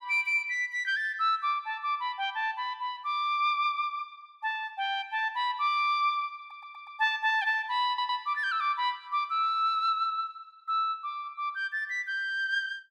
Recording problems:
audio stuttering; at 6.5 s and at 8 s

